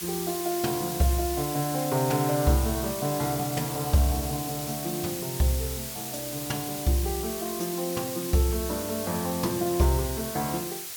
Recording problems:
background hiss; slope +2 dB per octave, SNR 5 dB

